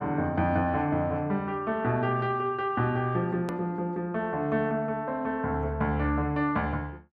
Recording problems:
edit click; at 3.5 s

